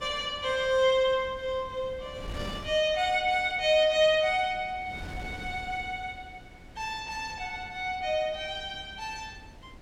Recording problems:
wind on the microphone; below 400 Hz, SNR 18 dB

